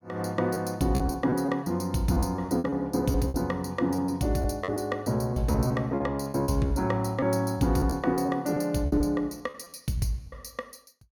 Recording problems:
lost packets; 11% of the sound replaced, filled with repeated pitch periods

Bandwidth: 18 kHz